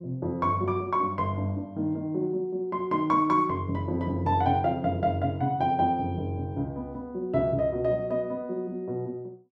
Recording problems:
none

